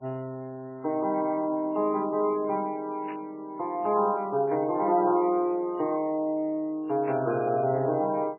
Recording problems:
codec artefacts; MP3, log-spectral distance 2 dB, nothing above 2.4 kHz
static burst; at 3 s, at 4.5 s and at 7 s; peak -13 dB vs average level

